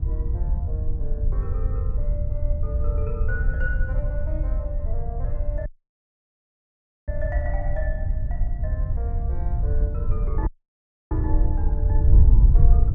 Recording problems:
wind on the microphone; below 74 Hz, SNR -12 dB
audio cutting out; at 5.5 s for 1.5 s and at 10 s for 0.5 s

